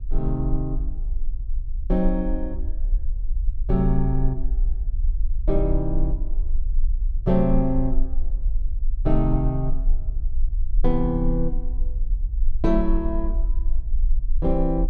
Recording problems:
low-frequency rumble; below 40 Hz, strongest tone 18 Hz, SNR 2 dB

